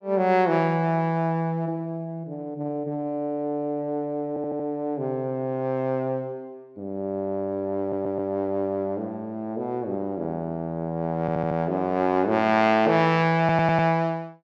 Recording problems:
audio stuttering; 4 times, first at 4.5 s

